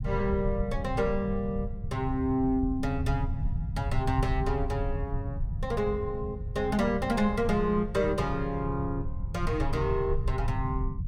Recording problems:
low-frequency rumble; below 110 Hz, SNR 4 dB

